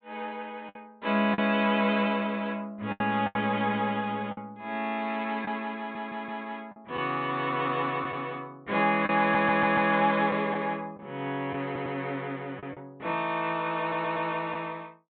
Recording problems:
treble missing; nothing above 4 kHz
lost packets; 4% of the sound replaced, filled with the last packet
audio stuttering; 4 times, first at 6 s

